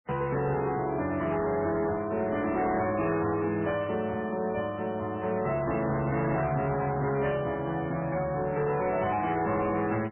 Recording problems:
lossy codec; MP3, log-spectral distance 4 dB, nothing above 2.5 kHz
distortion; hard clipping, uneven, signal-to-distortion ratio 11 dB

